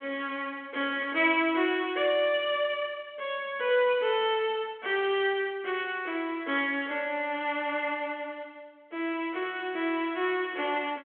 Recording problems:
phone line; 240 Hz to 3.3 kHz, G.726

